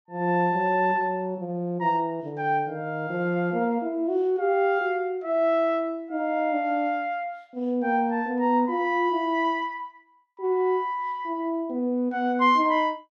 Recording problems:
none

